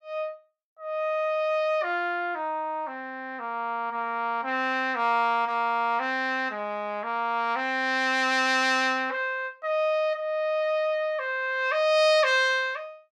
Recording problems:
none

